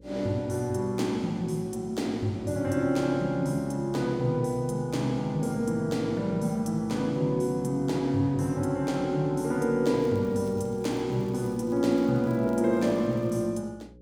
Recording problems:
electrical hum; 60 Hz, harmonics up to 540 Hz, SNR 24 dB
crackle; from 10 to 13 s; loose cable, SNR 30 dB

